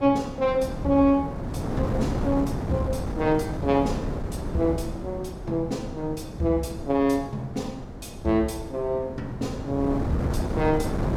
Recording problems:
wind on the microphone; below 390 Hz, SNR 6 dB

